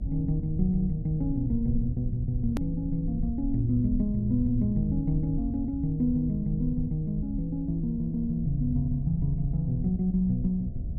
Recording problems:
electrical hum; 60 Hz, harmonics up to 720 Hz, SNR 26 dB
rumble; below 100 Hz, SNR 7 dB
hard cut with a click; at 2.5 s

